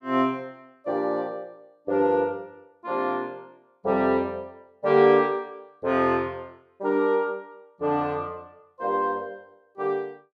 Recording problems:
none

